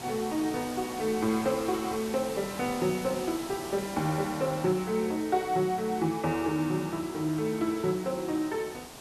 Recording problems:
hiss; SNR 12 dB

